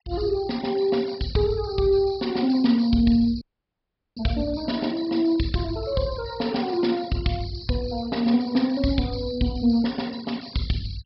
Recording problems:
treble missing; nothing above 5.3 kHz
denoising artefacts; signal-to-artefact ratio 21 dB
dropout; at 3.5 s for 1 s

